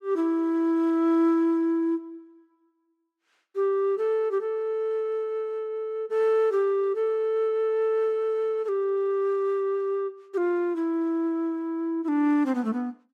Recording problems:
none

